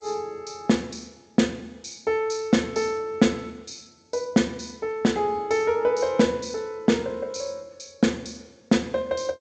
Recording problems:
lossy codec; G.722, log-spectral distance 6 dB, nothing above 7.6 kHz

